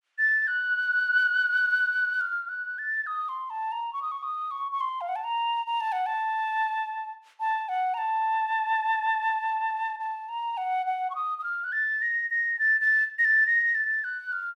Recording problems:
none

